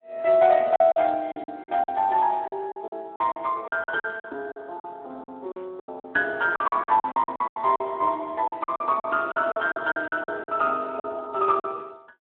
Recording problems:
telephone audio; 280 Hz to 3.3 kHz, Speex
packet loss; 15% of the sound replaced, filled with silence

